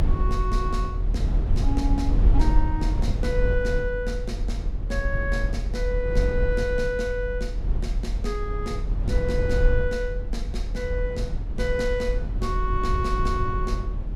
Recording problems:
hum; 50 Hz, harmonics up to 800 Hz, SNR 20 dB
low-frequency rumble; below 66 Hz, strongest tone 40 Hz, SNR -2 dB

